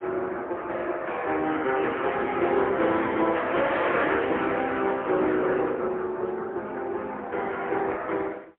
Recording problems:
phone line; 280 Hz to 3.5 kHz, AMR-NB, then MP3

